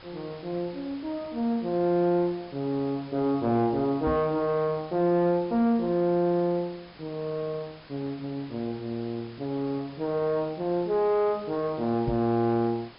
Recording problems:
treble cut off; nothing above 5.5 kHz
distortion; soft clipping, signal-to-distortion ratio 8 dB
background hiss; slope -6 dB per octave, SNR 16 dB
microphone bump; at 4 s and at 12 s; peak +1 dB vs average level

